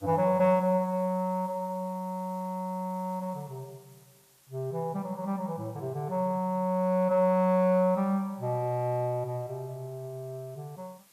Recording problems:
hiss; slope 0 dB per octave, SNR 29 dB

